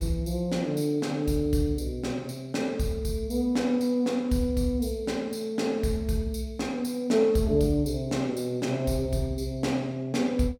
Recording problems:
none

